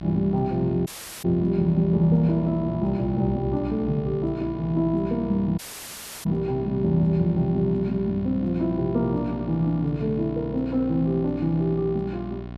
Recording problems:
hum; 60 Hz, harmonics up to 1.4 kHz, SNR 13 dB
dropout; at 1 s and at 5.5 s for 0.5 s

